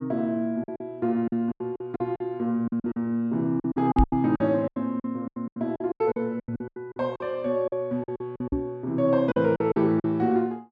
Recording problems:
lost packets; 17% of the sound replaced, filled with silence
microphone bump; at 4 s, at 6.5 s and at 8.5 s; peak +7 dB vs average level

